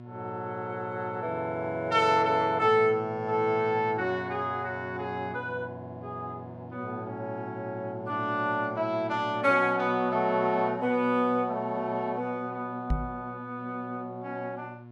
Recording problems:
mains hum; 60 Hz, harmonics up to 1.1 kHz, SNR 17 dB
microphone bump; at 13 s; peak +4 dB vs average level

